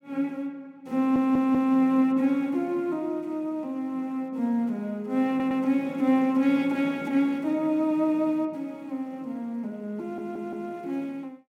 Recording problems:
audio stuttering; at 1 s, at 5.5 s and at 10 s

